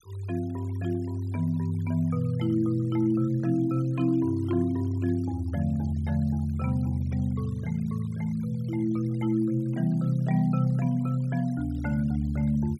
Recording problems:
noise reduction artefacts; signal-to-artefact ratio 27 dB

